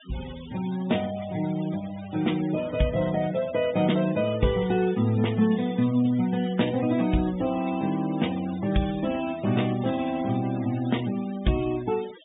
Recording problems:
low-pass filter; nothing above 3.7 kHz
noise reduction artefacts; signal-to-artefact ratio 18 dB

